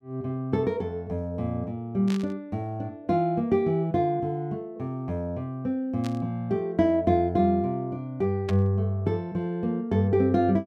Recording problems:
burst of static; at 2 s, at 6 s and at 8.5 s; peak -7 dB vs average level

